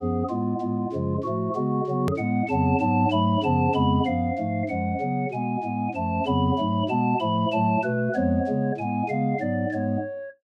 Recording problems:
hard cut with a click; at 2 s

